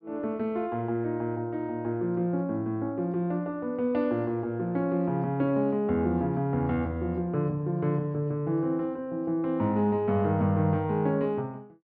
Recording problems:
treble cut off; nothing above 5.5 kHz

